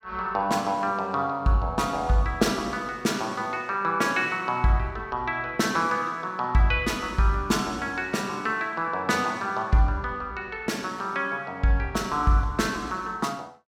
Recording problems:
none

